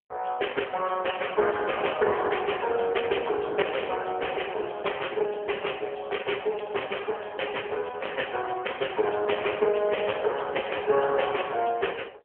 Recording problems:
telephone audio; 340 Hz to 3.2 kHz, AMR-NB

